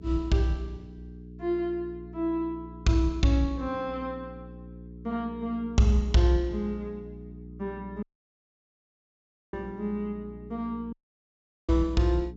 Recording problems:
treble cut off; nothing above 8 kHz
electrical hum; 60 Hz, harmonics up to 420 Hz, SNR 16 dB
audio cutting out; at 8 s for 1.5 s and at 11 s for 1 s

